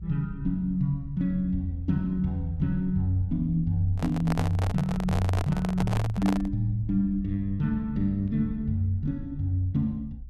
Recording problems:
low-frequency rumble; below 66 Hz, SNR 13 dB
microphone handling noise; from 4 to 6.5 s; peak 0 dB vs average level

